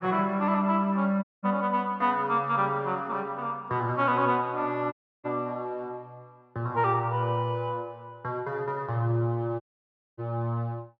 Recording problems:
dropout; at 1 s, at 5 s and at 9.5 s for 0.5 s

